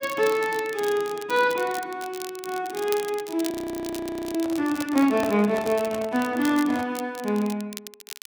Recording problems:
crackling; vinyl, SNR 15 dB
audio freezing; at 3.5 s for 1 s
microphone handling noise; from 4.5 to 7 s; peak -3 dB vs average level

